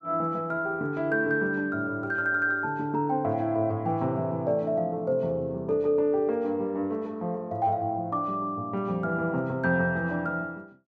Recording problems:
none

